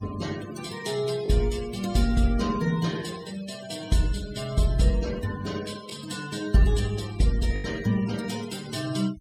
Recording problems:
denoising artefacts; signal-to-artefact ratio 15 dB
lost packets; 1.3% of the sound replaced, filled with the last packet

